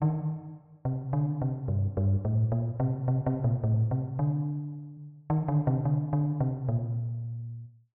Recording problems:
none

